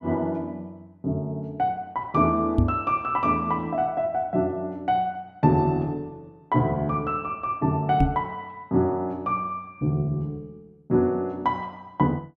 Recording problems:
microphone thump; at 2.5 s and at 8 s; peak +8 dB vs average level

